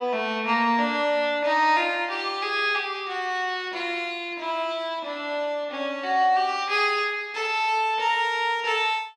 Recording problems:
none

